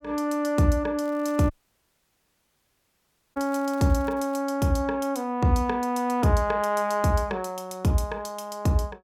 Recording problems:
crackle; from 1 to 4.5 s; loose cable, SNR 29 dB
dropout; at 1.5 s for 2 s

